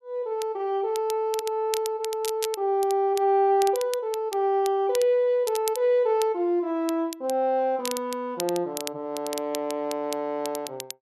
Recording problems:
crackle; vinyl, SNR 13 dB

